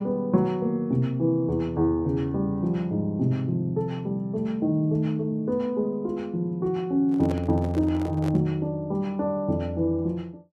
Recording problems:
microphone handling noise; from 7 to 8.5 s; peak -6 dB vs average level

